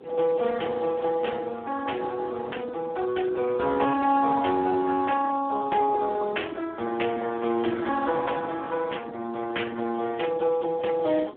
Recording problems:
phone line; 240 Hz to 3.4 kHz, Speex
wind on the microphone; below 500 Hz, SNR 21 dB

